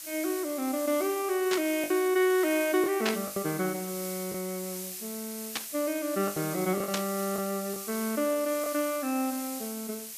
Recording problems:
hiss; slope +4 dB per octave, SNR 8 dB
packet loss; 4% of the sound replaced, filled with the last packet
static burst; 4 times, first at 1.5 s; peak +3 dB vs average level

